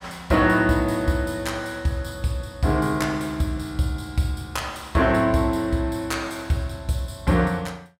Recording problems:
none

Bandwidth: 16 kHz